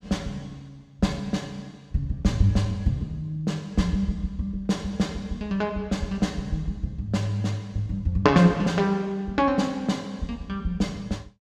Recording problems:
none

